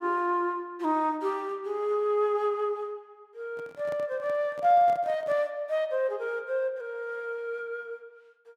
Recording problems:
microphone handling noise; from 3.5 to 5.5 s; peak -11 dB vs average level

